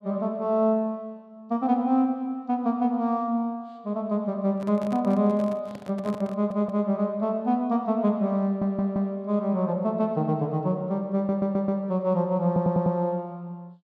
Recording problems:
microphone handling noise; from 4.5 to 7 s; peak -10 dB vs average level
stutter; 4 times, first at 6.5 s

